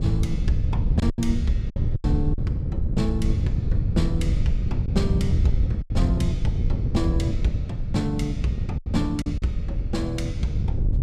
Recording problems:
mains hum; 50 Hz, harmonics up to 800 Hz, SNR 23 dB
wind noise; below 120 Hz, SNR -3 dB
packet loss; 5% of the sound replaced, filled with silence

